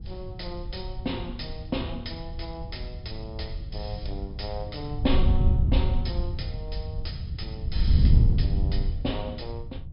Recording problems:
low-pass filter; nothing above 5.5 kHz
wind noise; below 98 Hz, SNR -7 dB

